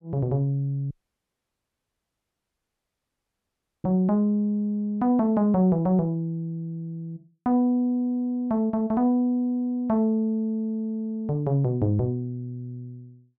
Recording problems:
audio cutting out; at 1 s for 3 s

